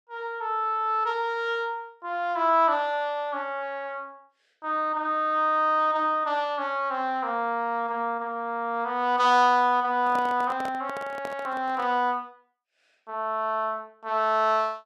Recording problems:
handling noise; from 10 to 12 s; peak -7 dB vs average level

